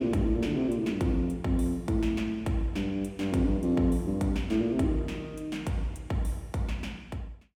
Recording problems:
none

